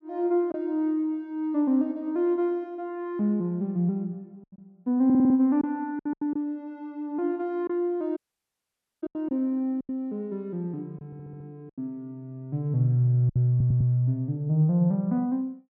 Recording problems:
packet loss; 4% of the sound replaced, filled with silence
stutter; at 5 s, at 11 s and at 14 s
audio cutting out; at 8 s for 1 s

